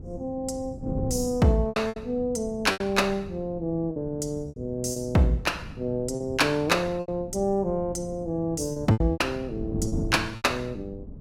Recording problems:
wind noise; below 220 Hz, SNR 12 dB
packet loss; 8% of the sound replaced, filled with repeated pitch periods

